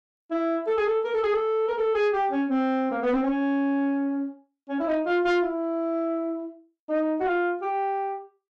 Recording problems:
distortion; soft clipping, signal-to-distortion ratio 12 dB

